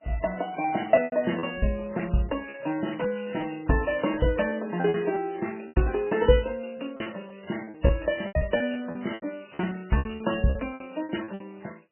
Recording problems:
codec artefacts; MP3, log-spectral distance 10 dB, nothing above 3 kHz
packet loss; 12% of the sound replaced, filled with repeated pitch periods
crackling; at 2.5 s; loose cable, SNR 27 dB

